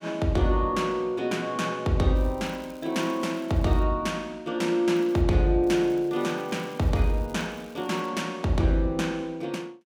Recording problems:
crackling; from 2 to 4 s, at 5 s and from 5.5 to 8 s; loose cable, SNR 28 dB

